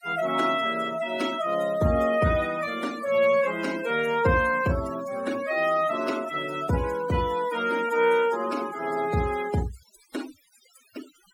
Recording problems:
noise reduction artefacts; signal-to-artefact ratio 16 dB

